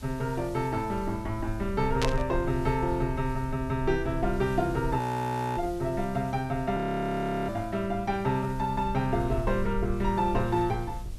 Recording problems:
background hiss; slope +1 dB per octave, SNR 25 dB
rumble; below 70 Hz, SNR 11 dB
burst of static; at 2 s; peak +2 dB vs average level
frozen audio; at 5 s for 0.5 s and at 7 s for 0.5 s

